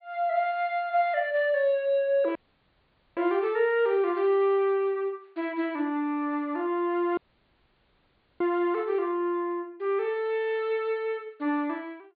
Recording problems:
treble cut off; nothing above 4.6 kHz
dropout; at 2.5 s for 1 s and at 7 s for 1 s

